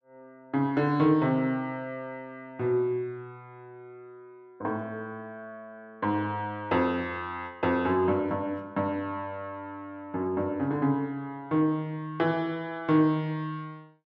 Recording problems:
none

